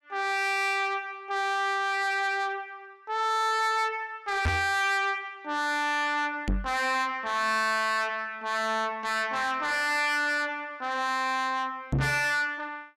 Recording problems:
distortion; soft clipping, signal-to-distortion ratio 6 dB
microphone thump; at 4.5 s, at 6.5 s and at 12 s; peak +4 dB vs average level

